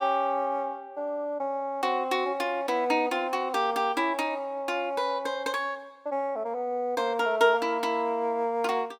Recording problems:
none

